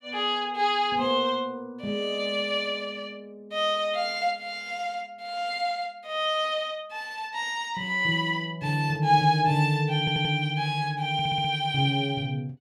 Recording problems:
audio stuttering; at 10 s and at 11 s

